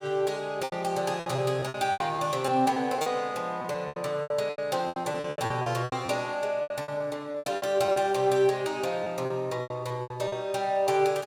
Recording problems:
lost packets; 16% of the sound replaced, filled with repeated pitch periods

